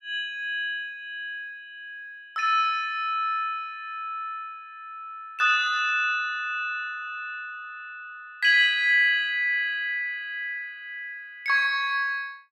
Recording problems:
none

